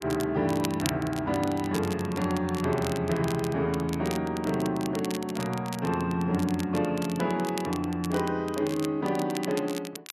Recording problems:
crackle; vinyl, SNR 13 dB

